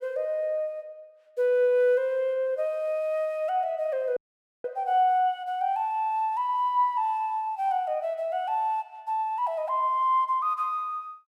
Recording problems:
audio cutting out; at 4 s

